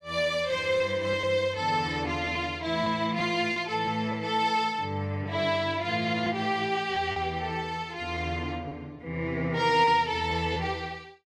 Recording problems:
packet loss; 3% of the sound replaced, filled with repeated pitch periods

